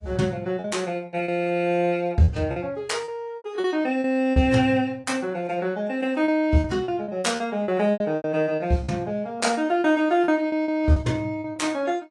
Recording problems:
codec artefacts; AAC, log-spectral distance 2 dB, nothing above 10.4 kHz
packet loss; 10% of the sound replaced, filled with repeated pitch periods

